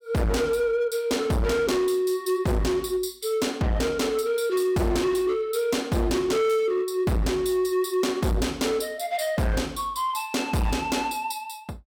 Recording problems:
distortion; hard clipping, signal-to-distortion ratio 6 dB

